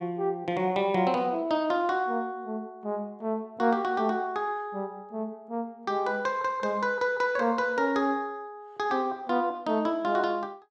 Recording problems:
none

